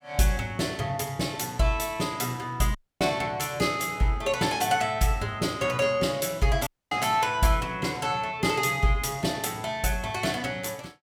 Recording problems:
audio cutting out; at 3 s and at 6.5 s

